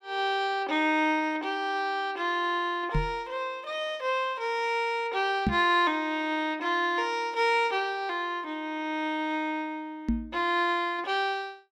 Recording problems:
knock on the microphone; at 3 s, at 5.5 s and at 10 s; peak +5 dB vs average level

